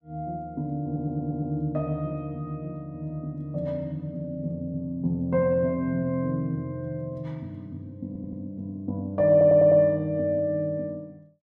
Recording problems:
stutter; at 1 s, at 8 s and at 9.5 s

